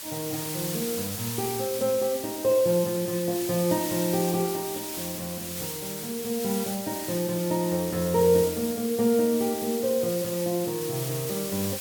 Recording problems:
hiss; slope +1 dB per octave, SNR 6 dB

